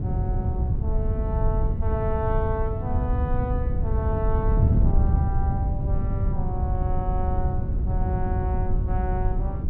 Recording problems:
wind on the microphone; below 110 Hz, SNR -7 dB

